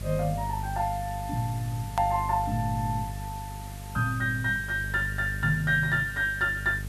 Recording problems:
electrical hum; 50 Hz, harmonics up to 450 Hz, SNR 9 dB
background hiss; slope -2 dB per octave, SNR 18 dB
click at an edit; at 2 s

